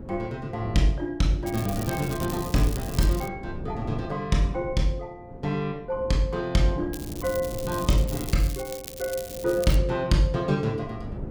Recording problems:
wind noise; below 280 Hz, SNR 12 dB
crackle; from 1.5 to 3.5 s and from 7 to 10 s; loose cable, SNR 12 dB

